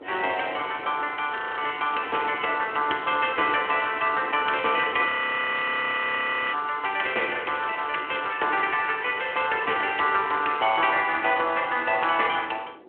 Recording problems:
telephone audio; 300 Hz to 3.3 kHz, Speex
wind noise; below 710 Hz, SNR 19 dB
audio freezing; at 1.5 s and at 5 s for 1.5 s

